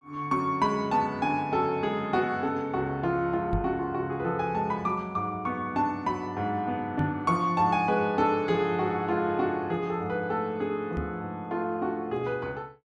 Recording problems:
knock on the microphone; at 3.5 s, at 7 s and at 11 s; peak +2 dB vs average level

